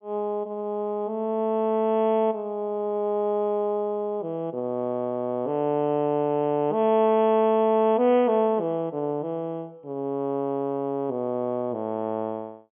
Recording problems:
treble cut off; nothing above 3.4 kHz

